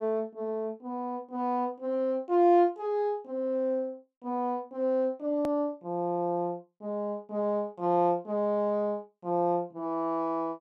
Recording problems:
click at an edit; at 5.5 s

